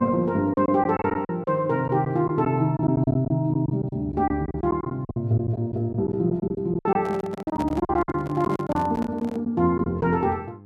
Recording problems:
hum; 50 Hz, harmonics up to 900 Hz, SNR 24 dB
packet loss; 13% of the sound replaced, filled with silence
handling noise; from 7 to 9.5 s; peak -6 dB vs average level

